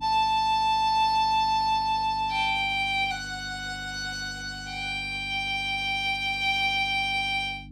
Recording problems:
hum; 50 Hz, harmonics up to 300 Hz, SNR 20 dB

